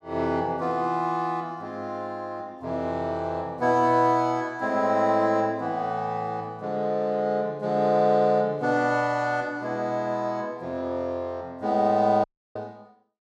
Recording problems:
audio cutting out; at 12 s

